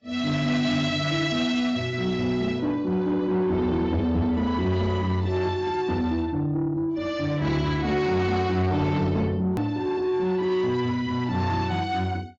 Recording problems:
lossy compression; AAC, log-spectral distance 2 dB, nothing above 17.7 kHz
distortion; soft clipping, signal-to-distortion ratio 12 dB
click at an edit; at 9.5 s

